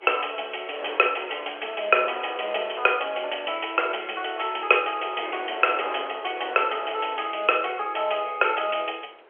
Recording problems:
telephone audio; 340 Hz to 3.3 kHz, G.711
wind noise; below 1.4 kHz, SNR 13 dB

